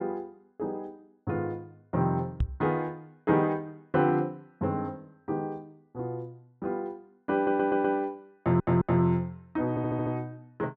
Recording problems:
knock on the microphone; at 2.5 s; peak +5 dB vs average level
stutter; at 7.5 s, at 8.5 s and at 9.5 s

